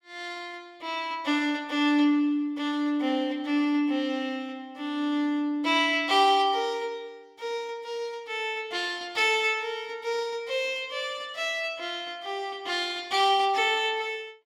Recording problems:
none

